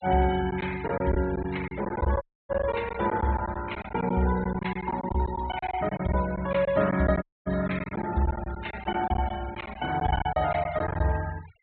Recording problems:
low-pass filter; nothing above 4 kHz
noise reduction artefacts; signal-to-artefact ratio 16 dB
packet loss; 11% of the sound replaced, filled with silence
audio cutting out; at 2 s and at 7 s

